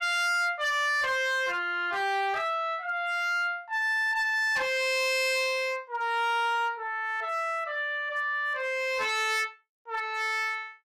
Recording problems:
distortion; hard clipping, signal-to-distortion ratio 8 dB

